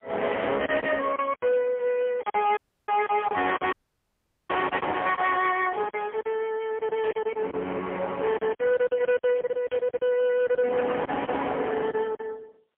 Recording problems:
phone line; 300 Hz to 3.3 kHz, AMR-NB, then MP3
distortion; hard clipping, uneven, signal-to-distortion ratio 7 dB
packet loss; 10% of the sound replaced, filled with silence
dropout; at 2.5 s and at 3.5 s for 1 s
static burst; at 7 s and at 9.5 s; peak -6 dB vs average level

